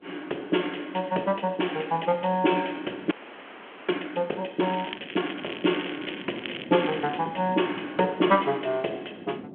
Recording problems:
phone line; 220 Hz to 3.3 kHz, G.726
wind noise; below 420 Hz, SNR 18 dB
audio freezing; at 3 s for 1 s
crackling; from 4.5 to 7 s; loose cable, SNR 12 dB

